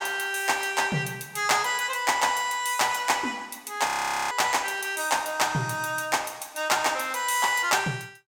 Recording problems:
frozen audio; at 4 s

